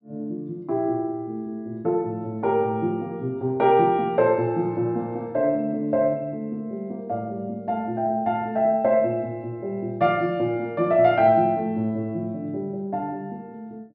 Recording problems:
treble missing; nothing above 5.5 kHz

